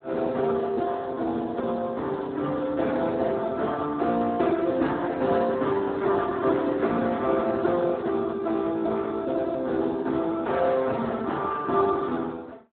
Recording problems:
telephone audio; 240 Hz to 2 kHz, Speex

